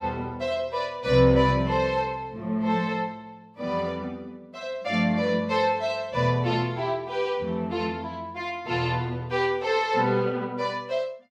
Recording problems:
none

